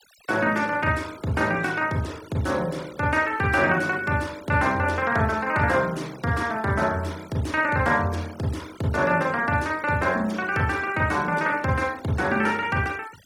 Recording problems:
noise reduction artefacts; signal-to-artefact ratio 22 dB

